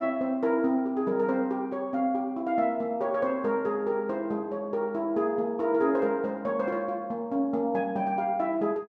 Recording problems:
none

